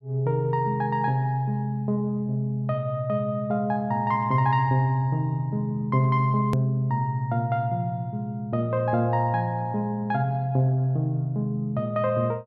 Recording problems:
edit click; at 6.5 s

